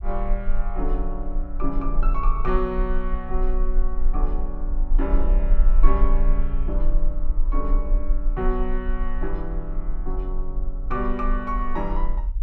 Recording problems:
rumble; below 34 Hz, strongest tone 18 Hz, SNR -4 dB

